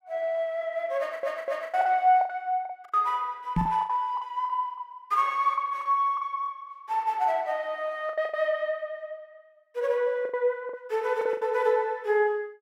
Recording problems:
packet loss; 9% of the sound replaced, filled with the last packet
audio stuttering; at 1 s
microphone thump; at 3.5 s; peak +4 dB vs average level

